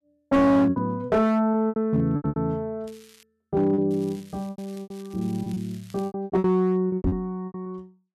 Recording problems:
distorted audio; hard clipping, signal-to-distortion ratio 10 dB
packet loss; 17% of the sound replaced, filled with repeated pitch periods
crackling; at 3 s and from 4 to 6 s; loose cable, SNR 27 dB
knock on the microphone; at 7 s; peak +3 dB vs average level

